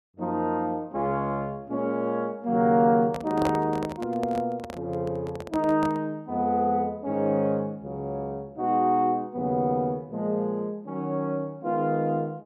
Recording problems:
microphone handling noise; from 3 to 6 s; peak +2 dB vs average level

